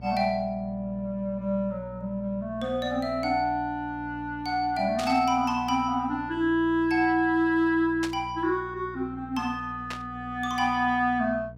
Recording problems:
electrical hum; 60 Hz, harmonics up to 720 Hz, SNR 17 dB
static burst; at 5 s, at 8 s and at 10 s; peak -3 dB vs average level

